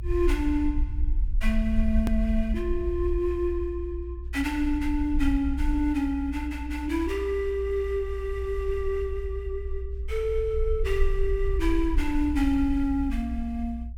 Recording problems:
low-frequency rumble; below 60 Hz, SNR 4 dB
click at an edit; at 2 s

